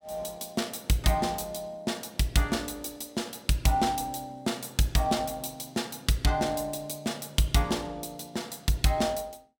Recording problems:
none

